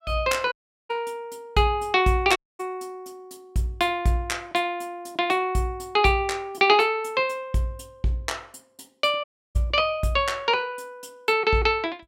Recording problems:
dropout; at 0.5 s, at 2.5 s and at 9 s

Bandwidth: 16.5 kHz